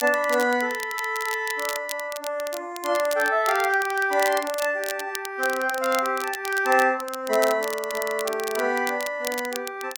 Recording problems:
crackling; vinyl, SNR 11 dB

